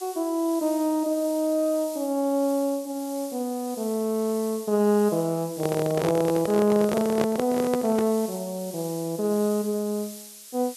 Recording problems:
background hiss; slope +4 dB per octave, SNR 15 dB
handling noise; from 5.5 to 8 s; peak +1 dB vs average level

